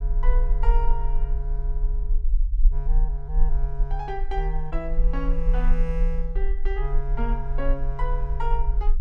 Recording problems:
rumble; below 38 Hz, strongest tone 26 Hz, SNR -7 dB

